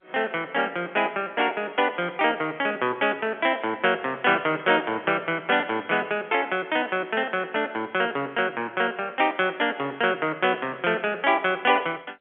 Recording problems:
telephone audio; 190 Hz to 3.4 kHz, G.711

